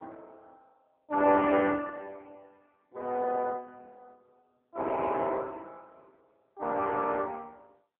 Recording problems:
phone line; 240 Hz to 3.2 kHz, AMR-NB

